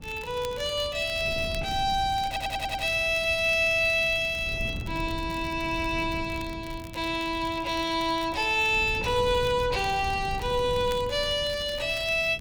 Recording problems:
wind noise; below 170 Hz, SNR 14 dB
crackling; vinyl, SNR 22 dB
stutter; at 2.5 s

